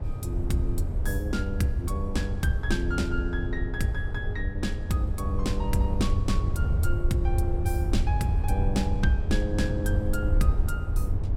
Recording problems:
low-frequency rumble; below 92 Hz, SNR -2 dB

